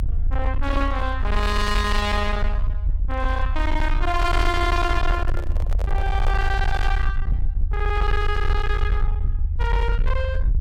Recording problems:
distortion; hard clipping, signal-to-distortion ratio 10 dB
rumble; below 66 Hz, SNR -1 dB
handling noise; from 5 to 7 s; peak -4 dB vs average level

